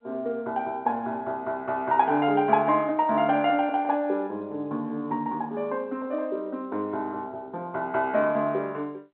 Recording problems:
telephone audio; 220 Hz to 3.3 kHz, G.711

